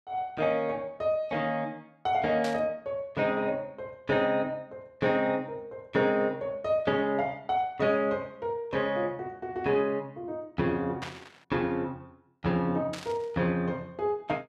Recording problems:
static burst; at 2.5 s, at 11 s and at 13 s; peak -4 dB vs average level

